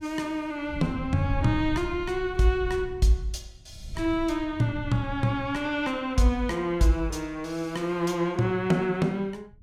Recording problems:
wind noise; below 100 Hz, SNR 12 dB

